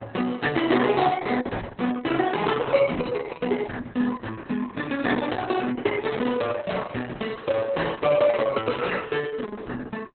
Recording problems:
lossy codec; Opus, log-spectral distance 5 dB, nothing above 4 kHz

